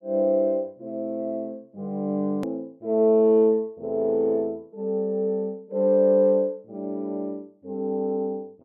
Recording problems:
click at an edit; at 2.5 s

